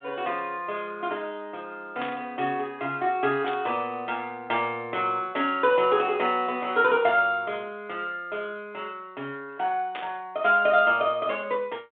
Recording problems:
telephone audio; 170 Hz to 3.7 kHz, G.726
static burst; at 2 s, at 3.5 s and at 10 s; peak -5 dB vs average level

